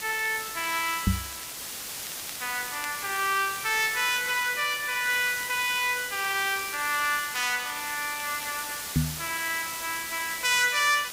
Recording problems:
background hiss; slope +1 dB per octave, SNR 7 dB
crackle; vinyl, SNR 24 dB
knock on the microphone; at 1 s and at 9 s; peak +6 dB vs average level

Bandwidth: 15.5 kHz